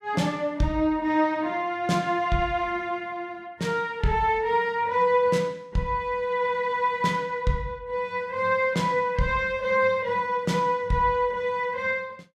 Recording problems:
none

